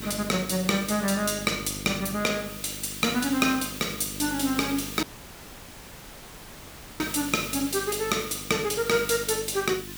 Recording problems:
mains hum; 50 Hz, harmonics up to 750 Hz, SNR 16 dB
hiss; SNR 11 dB
audio cutting out; at 5 s for 2 s

